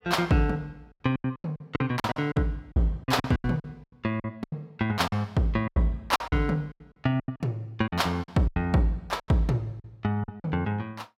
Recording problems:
lost packets; 14% of the sound replaced, filled with silence

